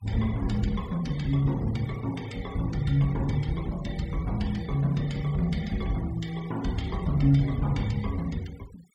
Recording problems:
denoising artefacts; signal-to-artefact ratio 21 dB

